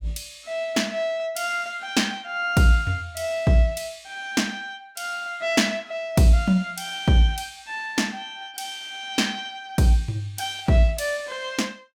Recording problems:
none

